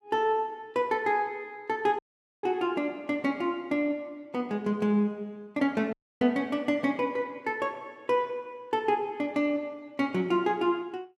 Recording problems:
audio cutting out; at 2 s and at 6 s

